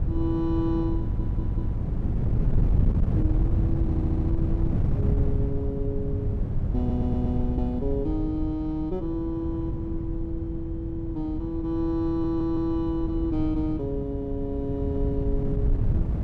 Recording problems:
wind on the microphone; below 130 Hz, SNR -2 dB
audio stuttering; 4 times, first at 1 s

